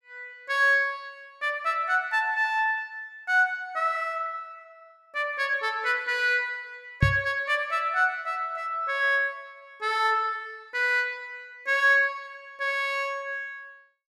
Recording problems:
knock on the microphone; at 7 s; peak +7 dB vs average level

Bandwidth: 14.5 kHz